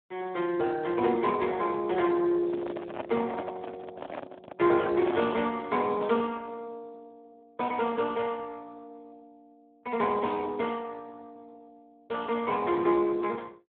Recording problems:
telephone audio; 190 Hz to 2.7 kHz, Speex
handling noise; from 2.5 to 5.5 s; peak -2 dB vs average level

